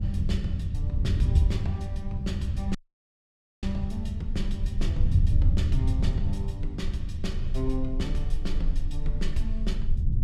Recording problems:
hum; 60 Hz, harmonics up to 600 Hz, SNR 23 dB
low-frequency rumble; below 34 Hz, strongest tone 22 Hz, SNR 1 dB
wind noise; below 100 Hz, SNR -5 dB
audio cutting out; at 3 s for 1 s

